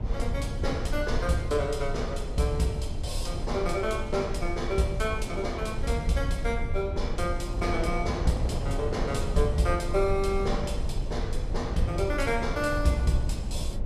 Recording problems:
rumble; below 82 Hz, SNR 4 dB
wind on the microphone; below 650 Hz, SNR 11 dB

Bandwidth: 13.5 kHz